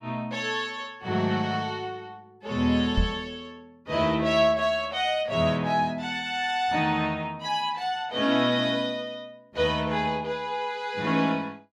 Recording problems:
microphone thump; at 3 s; peak +4 dB vs average level

